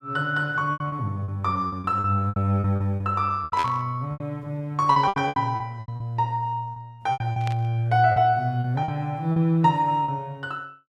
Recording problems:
lost packets; 13% of the sound replaced, filled with repeated pitch periods
burst of static; at 3.5 s and at 7.5 s; peak -4 dB vs average level

